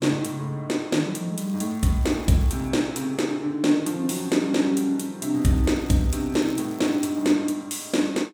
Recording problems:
crackling; from 1.5 to 2.5 s and from 5.5 to 7.5 s; loose cable, SNR 25 dB

